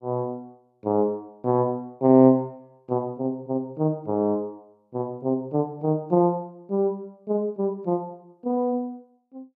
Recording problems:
none

